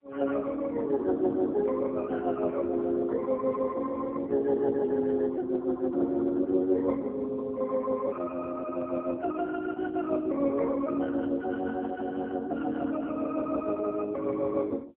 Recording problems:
phone line; 240 Hz to 2.9 kHz, AMR-NB

